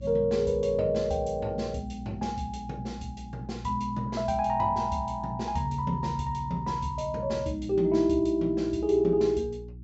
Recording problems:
treble cut off; nothing above 7.7 kHz
hum; 60 Hz, harmonics up to 360 Hz, SNR 15 dB

